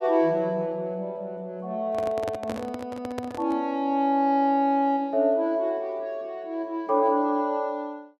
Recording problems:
microphone handling noise; from 2 to 3.5 s; peak -4 dB vs average level

